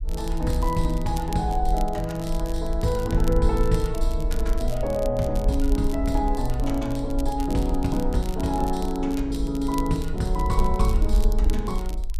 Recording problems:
rumble; below 50 Hz, SNR 3 dB
crackle; vinyl, SNR 18 dB

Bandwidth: 14.5 kHz